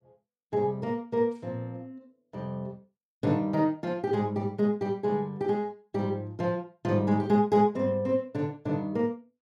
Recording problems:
none

